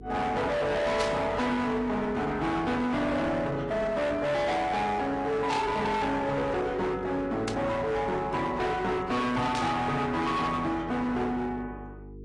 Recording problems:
lossy codec; AAC, log-spectral distance 2 dB, nothing above 10.7 kHz
distorted audio; hard clipping, signal-to-distortion ratio 7 dB
hum; 50 Hz, harmonics up to 550 Hz, SNR 18 dB
burst of static; 4 times, first at 1 s; peak -2 dB vs average level

